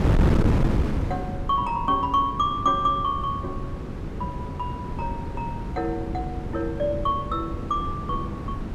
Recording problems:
wind noise; below 260 Hz, SNR 2 dB

